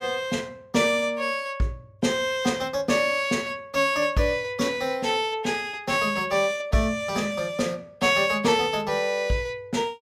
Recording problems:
none

